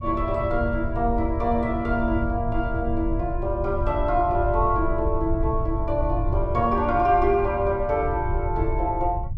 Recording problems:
low-frequency rumble; below 90 Hz, SNR 5 dB

